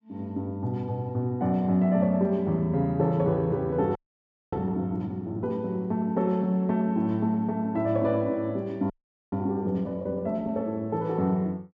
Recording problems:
frozen audio; at 4 s for 0.5 s and at 9 s

